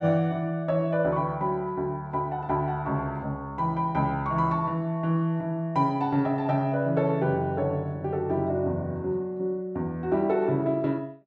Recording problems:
none

